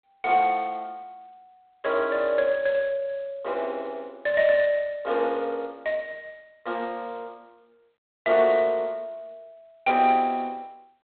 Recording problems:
phone line; 220 Hz to 3.6 kHz, G.726

